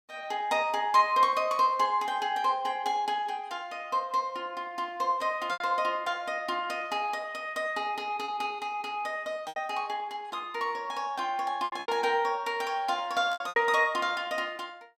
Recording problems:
lost packets; 4% of the sound replaced, filled with repeated pitch periods

